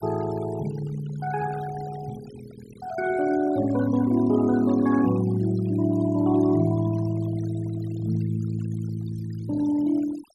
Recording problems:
denoising artefacts; signal-to-artefact ratio 17 dB

